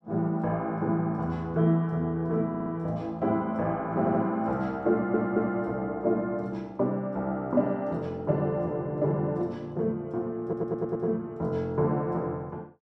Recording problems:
stutter; 4 times, first at 2.5 s

